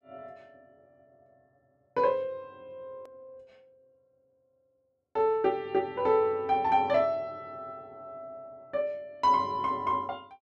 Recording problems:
edit click; at 3 s

